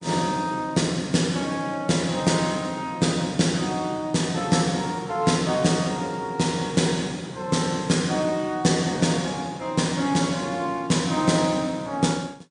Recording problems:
lossy codec; MP3, log-spectral distance 3 dB, nothing above 9.5 kHz

